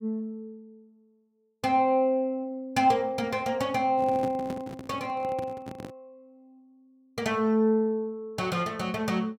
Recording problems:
microphone handling noise; from 4 to 6 s; peak -4 dB vs average level

